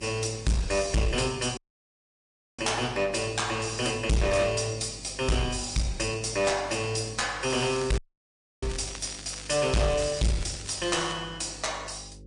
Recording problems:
lossy compression; MP3, log-spectral distance 7 dB
distortion; hard clipping, uneven, signal-to-distortion ratio 5 dB
electrical hum; 50 Hz, harmonics up to 550 Hz, SNR 20 dB
audio cutting out; at 1.5 s for 1 s and at 8 s for 0.5 s
crackle; from 7.5 to 11 s; loose cable, SNR 15 dB

